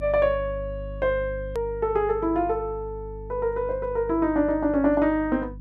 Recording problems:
electrical hum; 50 Hz, harmonics up to 300 Hz, SNR 14 dB
edit click; at 1.5 s

